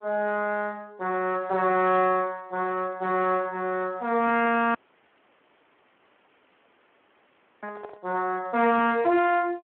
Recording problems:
phone line; 260 Hz to 3 kHz, Speex
distortion; soft clipping, signal-to-distortion ratio 12 dB
audio cutting out; at 5 s for 3 s
microphone handling noise; at 7.5 s; peak -11 dB vs average level

